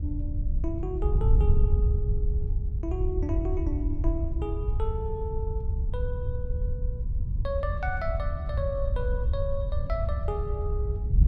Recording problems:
wind on the microphone; below 84 Hz, SNR -6 dB

